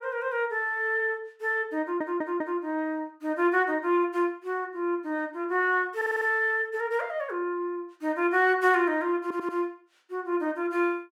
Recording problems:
audio stuttering; at 2 s, at 6 s and at 9 s

